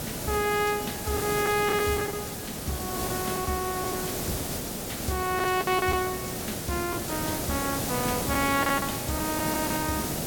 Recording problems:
background hiss; SNR 2 dB
packet loss; 8% of the sound replaced, filled with the last packet

